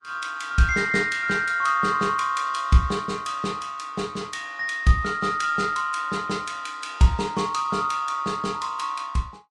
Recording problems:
codec artefacts; Vorbis, log-spectral distance 2 dB, nothing above 10.1 kHz

